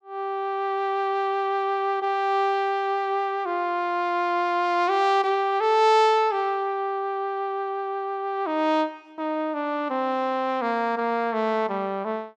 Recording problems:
none

